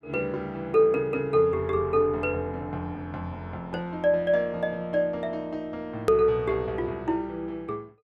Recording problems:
click at an edit; at 6 s

